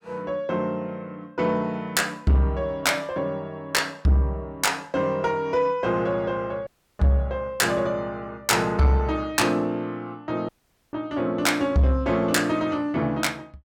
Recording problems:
distortion; soft clipping, signal-to-distortion ratio 11 dB
dropout; at 6.5 s and at 10 s

